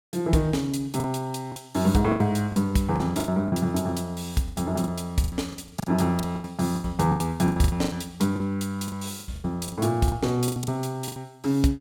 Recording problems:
lost packets; 15% of the sound replaced, filled with the last packet

